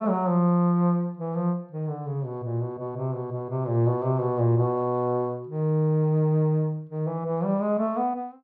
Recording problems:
none

